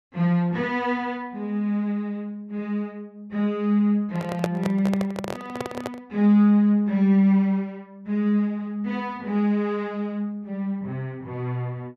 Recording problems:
microphone handling noise; from 4 to 6 s; peak +2 dB vs average level

